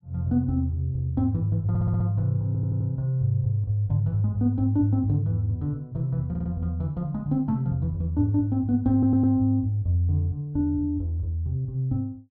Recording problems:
audio stuttering; 4 times, first at 1.5 s

